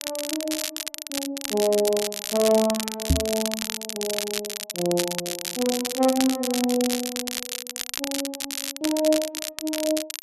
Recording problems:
crackling; vinyl, SNR 3 dB
knock on the microphone; at 3 s; peak +8 dB vs average level

